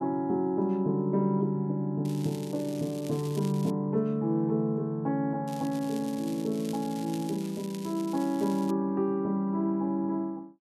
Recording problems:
crackle; from 2 to 3.5 s and from 5.5 to 8.5 s; loose cable, SNR 18 dB

